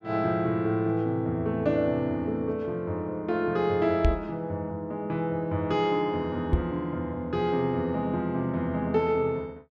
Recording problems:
microphone thump; at 4 s and at 6.5 s; peak +7 dB vs average level

